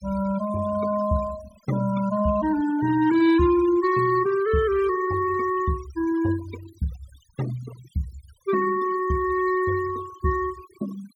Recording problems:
denoising artefacts; signal-to-artefact ratio 17 dB

